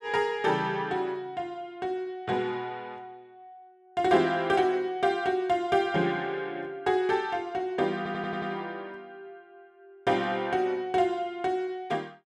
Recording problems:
stutter; at 8 s

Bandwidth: 12.5 kHz